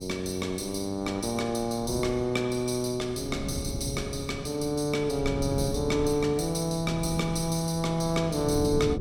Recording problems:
wind noise; below 240 Hz, SNR 10 dB

